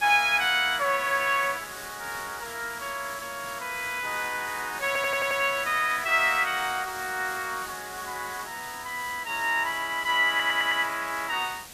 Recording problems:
hiss; slope 0 dB per octave, SNR 13 dB
stutter; at 5 s and at 10 s

